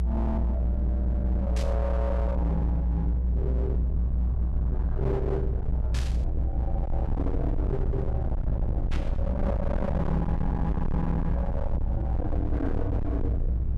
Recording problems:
distortion; hard clipping, signal-to-distortion ratio 7 dB
low-frequency rumble; below 92 Hz, strongest tone 60 Hz, SNR -3 dB
static burst; at 1.5 s, at 6 s and at 9 s; peak -4 dB vs average level

